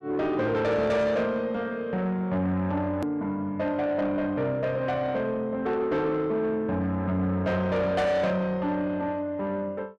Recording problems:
distorted audio; soft clipping, signal-to-distortion ratio 11 dB
click at an edit; at 3 s

